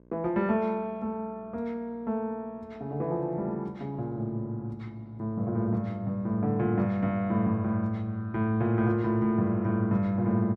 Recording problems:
mains hum; 60 Hz, harmonics up to 1.1 kHz, SNR 27 dB

